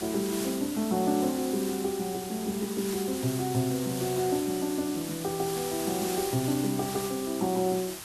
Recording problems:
background hiss; slope 0 dB per octave, SNR 8 dB

